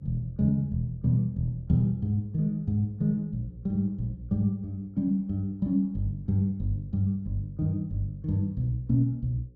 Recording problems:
hum; 60 Hz, harmonics up to 540 Hz, SNR 29 dB

